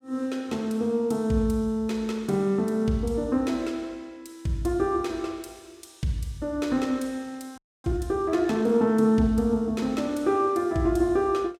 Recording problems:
audio freezing; at 7.5 s

